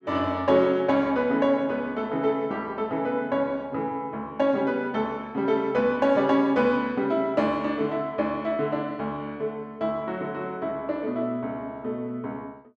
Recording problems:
none

